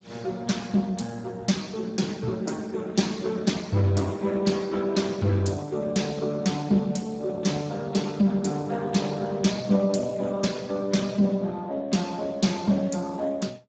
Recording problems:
codec artefacts; Speex, log-spectral distance 4 dB, nothing above 7.6 kHz

